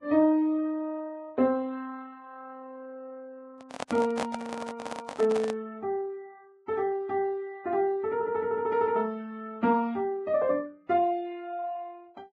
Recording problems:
lossy compression; Vorbis, log-spectral distance 2 dB
handling noise; from 3.5 to 5.5 s; peak +1 dB vs average level

